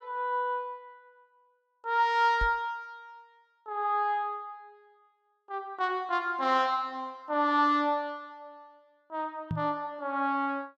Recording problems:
microphone thump; at 2.5 s and at 9.5 s; peak 0 dB vs average level

